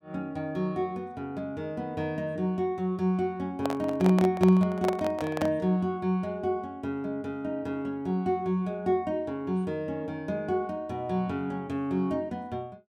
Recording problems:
microphone handling noise; from 3.5 to 5.5 s; peak +3 dB vs average level

